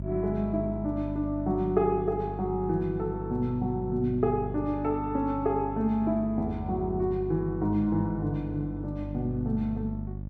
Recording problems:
hum; 50 Hz, harmonics up to 550 Hz, SNR 8 dB

